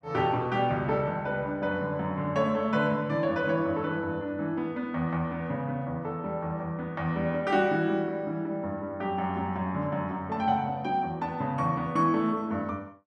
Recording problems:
none

